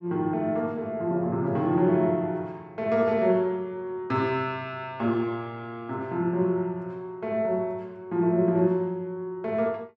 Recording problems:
none

